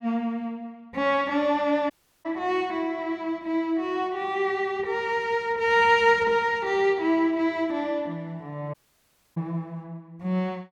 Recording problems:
audio cutting out; at 2 s and at 8.5 s for 0.5 s

